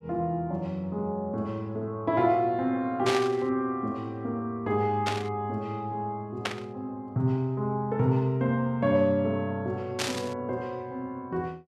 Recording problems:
static burst; 4 times, first at 3 s; peak +4 dB vs average level

